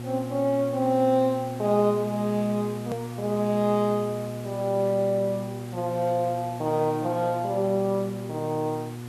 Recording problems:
electrical hum; 60 Hz, harmonics up to 840 Hz, SNR 10 dB
hiss; slope -3 dB per octave, SNR 20 dB
edit click; at 3 s

